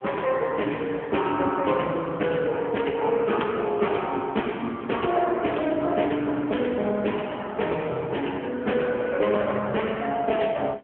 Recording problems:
phone line; 240 Hz to 3.2 kHz, AMR-NB

